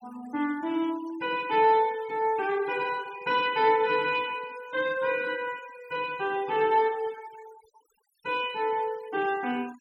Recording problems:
noise reduction artefacts; signal-to-artefact ratio 22 dB

